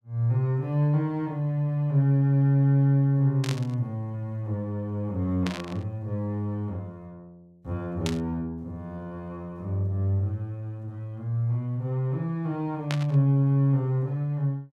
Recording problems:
burst of static; 4 times, first at 3.5 s; peak -2 dB vs average level

